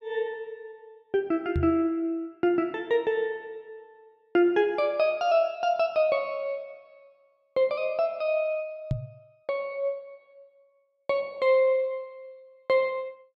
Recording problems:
microphone bump; at 1.5 s and at 9 s; peak +2 dB vs average level

